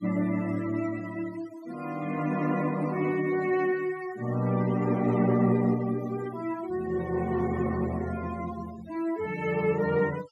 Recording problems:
noise reduction artefacts; signal-to-artefact ratio 18 dB

